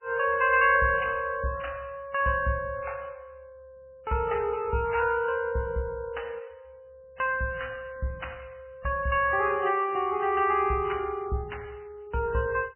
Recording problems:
lossy codec; MP3, log-spectral distance 3 dB, nothing above 2.6 kHz

